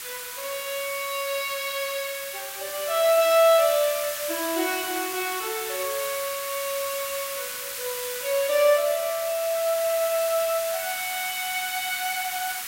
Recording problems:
background hiss; SNR 6 dB

